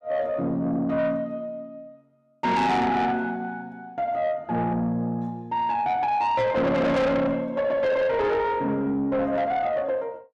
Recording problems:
distorted audio; soft clipping, signal-to-distortion ratio 7 dB

